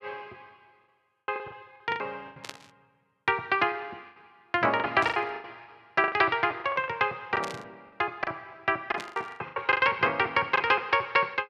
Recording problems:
lost packets; 15% of the sound replaced, filled with the last packet
burst of static; 4 times, first at 2.5 s; peak -6 dB vs average level

